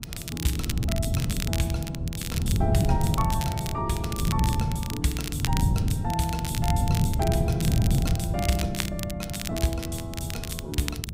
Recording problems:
wind noise; below 160 Hz, SNR -3 dB
crackle; vinyl, SNR 5 dB

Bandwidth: 15.5 kHz